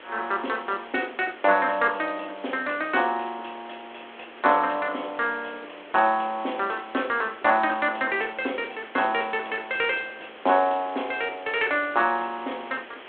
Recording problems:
phone line; 260 Hz to 3.5 kHz, G.726
hiss; SNR 18 dB

